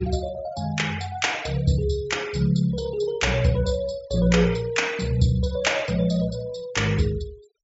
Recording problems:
treble cut off; nothing above 8 kHz
denoising artefacts; signal-to-artefact ratio 21 dB

